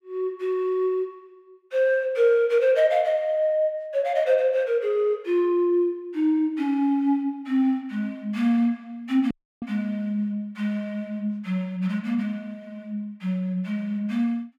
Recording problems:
audio cutting out; at 9.5 s

